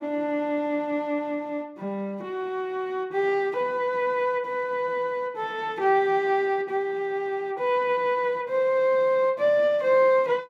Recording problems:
none

